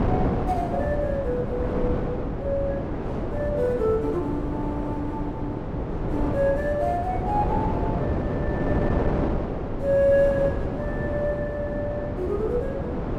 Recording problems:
wind noise; below 480 Hz, SNR 1 dB

